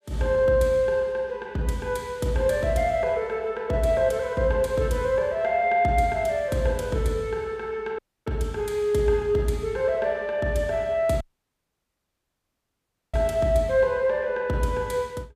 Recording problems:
audio cutting out; at 8 s and at 11 s for 2 s

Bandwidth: 15 kHz